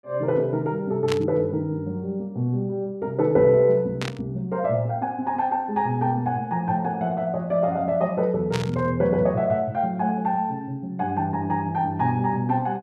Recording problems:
static burst; at 1 s, at 4 s and at 8.5 s; peak -1 dB vs average level

